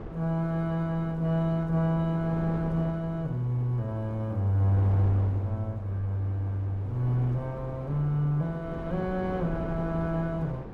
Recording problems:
wind on the microphone; below 430 Hz, SNR 12 dB

